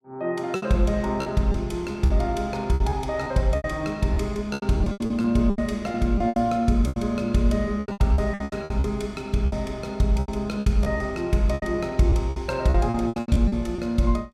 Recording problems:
packet loss; 15% of the sound replaced, filled with repeated pitch periods

